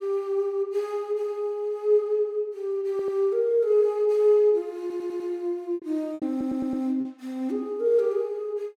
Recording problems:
packet loss; 3% of the sound replaced, filled with repeated pitch periods
stutter; at 3 s, at 5 s and at 6.5 s

